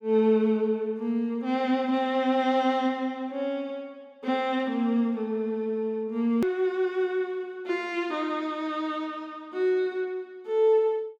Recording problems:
click at an edit; at 6.5 s

